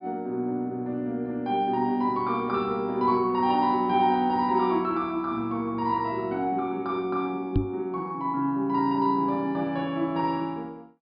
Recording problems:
treble cut off; nothing above 5.5 kHz
microphone thump; at 7.5 s; peak +6 dB vs average level

